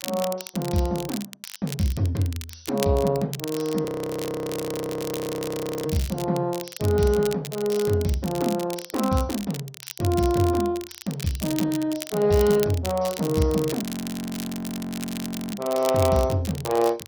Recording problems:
codec artefacts; MP2, log-spectral distance 4 dB
crackling; vinyl, SNR 12 dB
frozen audio; at 4 s for 2 s and at 14 s for 1.5 s

